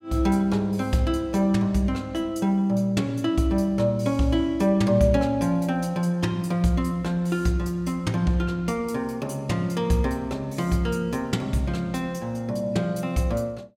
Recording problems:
none

